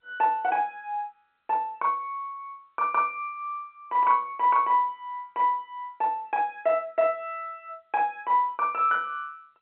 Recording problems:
telephone audio; 240 Hz to 3.3 kHz, G.711

